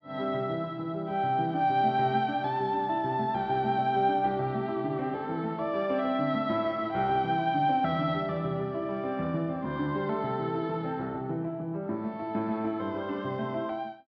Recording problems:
none

